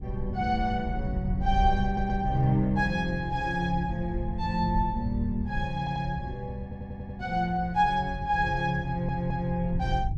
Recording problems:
wind on the microphone; below 90 Hz, SNR 7 dB
audio stuttering; 4 times, first at 2 s

